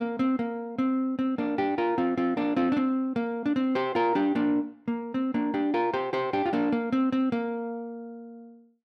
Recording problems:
none

